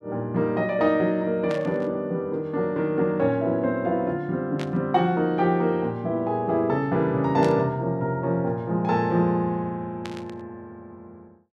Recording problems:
static burst; 4 times, first at 1.5 s; peak -8 dB vs average level

